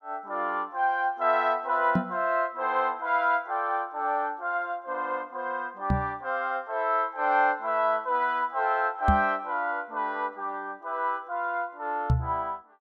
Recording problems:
microphone bump; 4 times, first at 2 s; peak +7 dB vs average level

